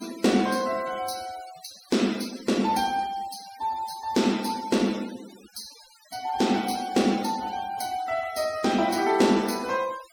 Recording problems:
denoising artefacts; signal-to-artefact ratio 17 dB

